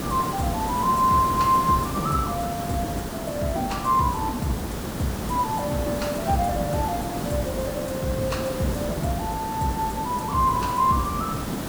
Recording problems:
background hiss; slope -6 dB per octave, SNR 5 dB

